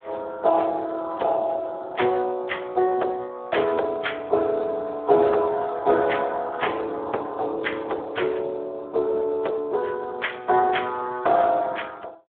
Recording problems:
phone line; 320 Hz to 3.5 kHz, Speex

